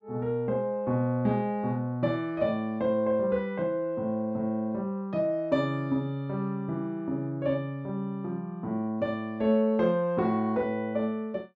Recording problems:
none

